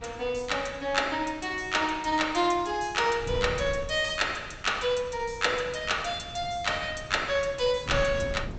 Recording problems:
treble missing; nothing above 8 kHz
wind noise; below 190 Hz, SNR 15 dB

